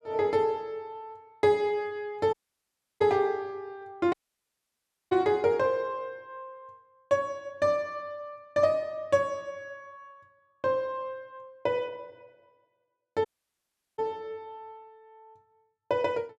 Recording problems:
dropout; at 2.5 s for 0.5 s, at 4 s for 1 s and at 13 s for 0.5 s

